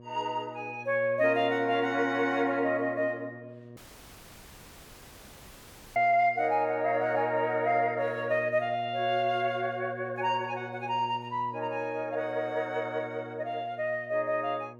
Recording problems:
hum; 60 Hz, harmonics up to 1.2 kHz, SNR 17 dB
dropout; at 4 s for 2 s

